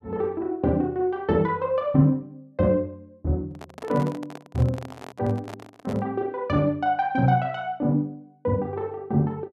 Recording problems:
handling noise; from 3.5 to 6 s; peak -10 dB vs average level

